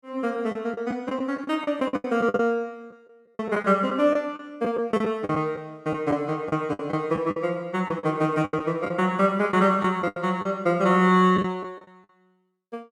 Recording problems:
lost packets; 11% of the sound replaced, filled with the last packet

